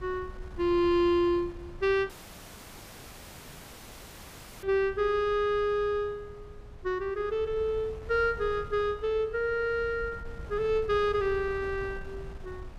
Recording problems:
wind noise; below 120 Hz, SNR 17 dB
audio cutting out; at 2 s for 2.5 s

